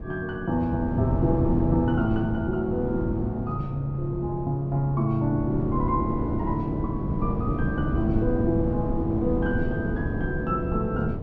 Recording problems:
wind noise; below 260 Hz, SNR 3 dB

